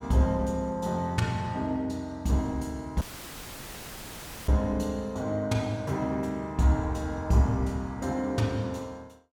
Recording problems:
dropout; at 3 s for 1.5 s; filled with static

